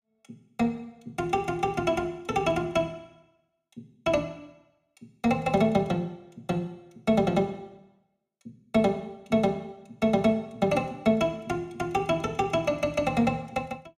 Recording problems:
none

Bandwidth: 15 kHz